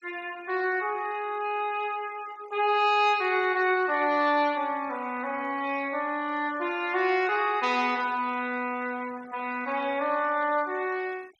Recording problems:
noise reduction artefacts; signal-to-artefact ratio 23 dB

